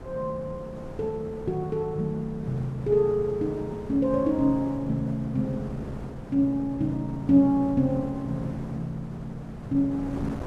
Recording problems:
wind noise; below 470 Hz, SNR 13 dB

